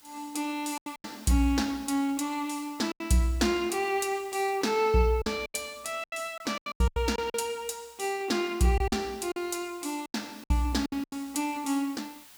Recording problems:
hiss; slope +1 dB per octave, SNR 23 dB
packet loss; 9% of the sound replaced, filled with silence

